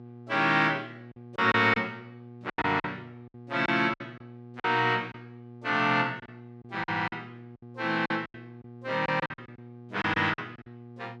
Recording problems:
hum; 60 Hz, harmonics up to 840 Hz, SNR 19 dB
packet loss; 12% of the sound replaced, filled with silence

